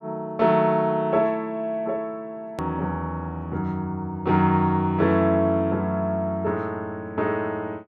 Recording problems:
hard cut with a click; at 2.5 s

